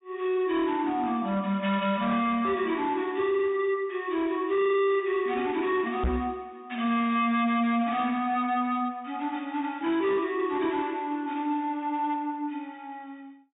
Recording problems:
low-pass filter; nothing above 4 kHz
distortion; hard clipping, signal-to-distortion ratio 10 dB
microphone bump; at 6 s; peak +3 dB vs average level

